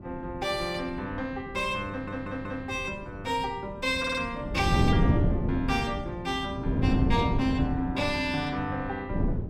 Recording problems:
wind on the microphone; below 230 Hz, SNR -1 dB
stutter; at 2 s and at 4 s

